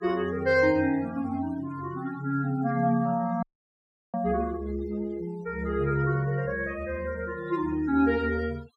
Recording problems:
noise reduction artefacts; signal-to-artefact ratio 21 dB
dropout; at 3.5 s for 0.5 s

